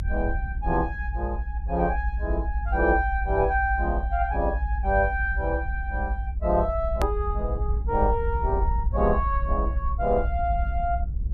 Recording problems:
low-frequency rumble; below 62 Hz, SNR 2 dB
click at an edit; at 7 s

